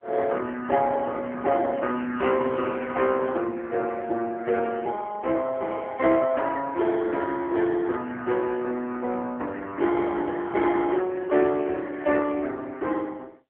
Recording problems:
phone line; 260 Hz to 3.3 kHz, AMR-NB

